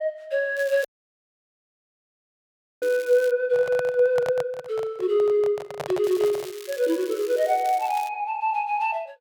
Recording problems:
crackling; from 0.5 to 3.5 s and from 6 to 8 s; loose cable, SNR 19 dB
audio cutting out; at 1 s for 2 s
microphone handling noise; from 3.5 to 6.5 s; peak -3 dB vs average level

